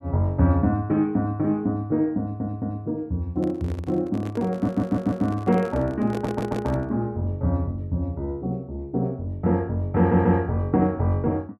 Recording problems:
stutter; 4 times, first at 2 s
handling noise; from 3.5 to 7 s; peak -5 dB vs average level

